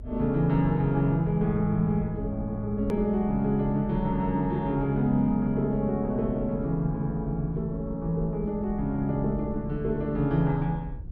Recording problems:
low-frequency rumble; below 72 Hz, strongest tone 46 Hz, SNR 13 dB
edit click; at 3 s

